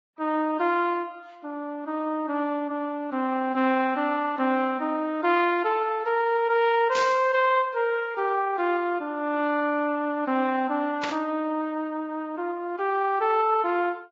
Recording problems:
lossy codec; Vorbis, log-spectral distance 2 dB
static burst; at 7 s and at 11 s; peak -2 dB vs average level

